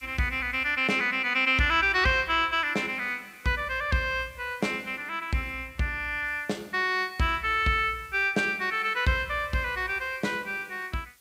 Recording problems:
hiss; slope +1 dB per octave, SNR 29 dB

